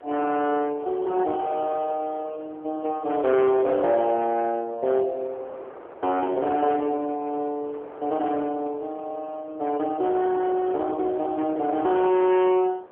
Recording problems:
telephone audio; 340 Hz to 3.5 kHz, AMR-NB
distortion; hard clipping, signal-to-distortion ratio 13 dB
wind on the microphone; below 980 Hz, SNR 20 dB

